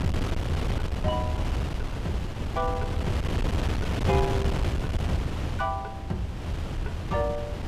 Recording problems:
wind noise; below 250 Hz, SNR -3 dB

